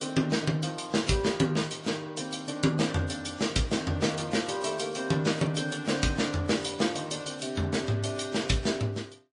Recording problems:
lossy compression; MP3, then AAC, log-spectral distance 4 dB, nothing above 10.1 kHz

